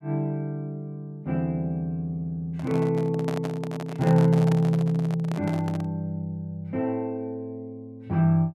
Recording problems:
handling noise; from 2.5 to 6 s; peak -3 dB vs average level

